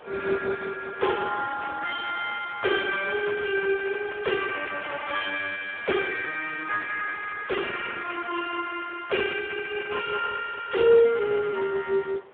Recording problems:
telephone audio; 320 Hz to 3.1 kHz, Speex
wind on the microphone; below 1.2 kHz, SNR 21 dB

